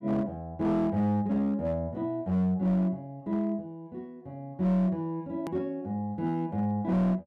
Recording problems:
distortion; hard clipping, signal-to-distortion ratio 11 dB
edit click; at 5.5 s

